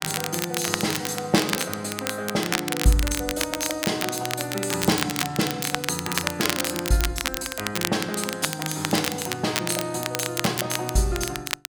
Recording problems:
crackling; vinyl, SNR 2 dB

